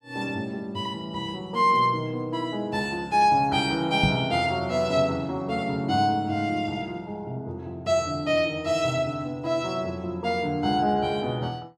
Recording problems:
microphone thump; at 4 s; peak +5 dB vs average level

